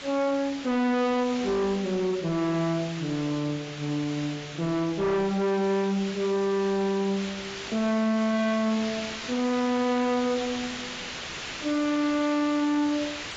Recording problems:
lossy compression; AAC, log-spectral distance 6 dB, nothing above 7.3 kHz
distortion; hard clipping, signal-to-distortion ratio 7 dB
hiss; SNR 10 dB

